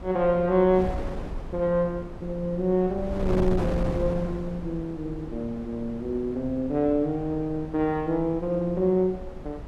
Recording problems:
wind noise; below 280 Hz, SNR 10 dB

